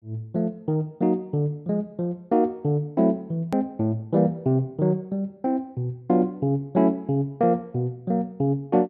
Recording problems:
hard cut with a click; at 3.5 s

